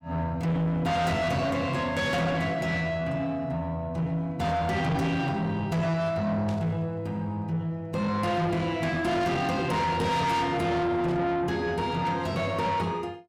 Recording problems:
distortion; soft clipping, signal-to-distortion ratio 7 dB
static burst; 4 times, first at 2 s; peak -13 dB vs average level

